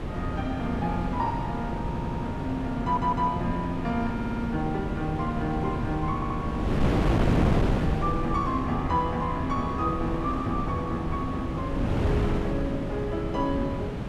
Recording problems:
wind noise; below 360 Hz, SNR 0 dB
audio stuttering; 4 times, first at 2 s

